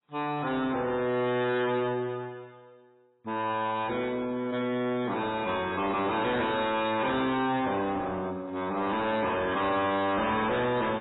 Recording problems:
codec artefacts; MP3, then AAC, log-spectral distance 4 dB, nothing above 3.8 kHz
distortion; soft clipping, signal-to-distortion ratio 8 dB

